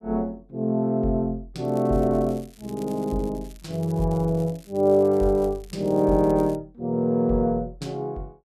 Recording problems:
crackling; from 1.5 to 5 s and from 5 to 6.5 s; loose cable, SNR 27 dB

